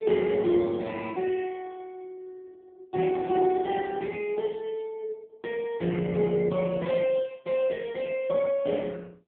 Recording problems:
phone line; 130 Hz to 3.3 kHz, AMR-NB

